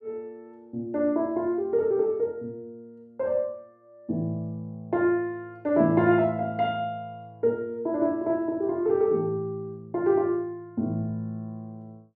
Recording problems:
none

